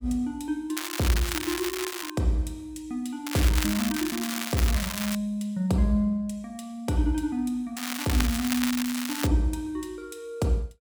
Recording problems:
crackling; from 1 to 2 s, from 3.5 to 5 s and from 8 to 9.5 s; loose cable, SNR 4 dB

